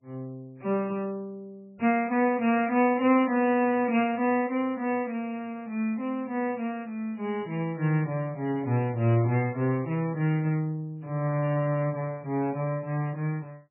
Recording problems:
lossy compression; MP3, log-spectral distance 2 dB, nothing above 2.7 kHz

